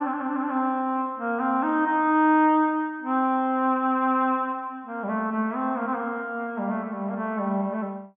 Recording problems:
treble missing; nothing above 3.4 kHz

